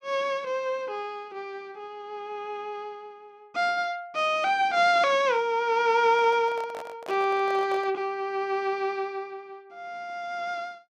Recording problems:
microphone handling noise; from 6 to 8 s; peak -9 dB vs average level

